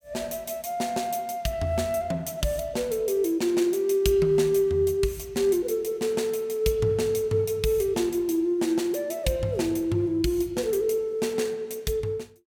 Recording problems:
none

